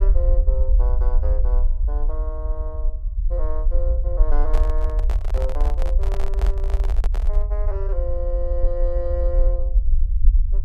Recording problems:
low-frequency rumble; below 50 Hz, SNR -10 dB
handling noise; from 4.5 to 7.5 s; peak +2 dB vs average level

